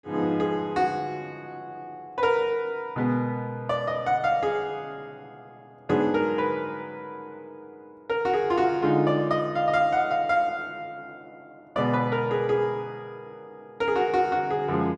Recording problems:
none

